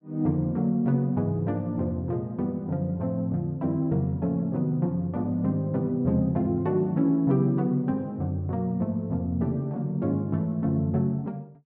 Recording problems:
none

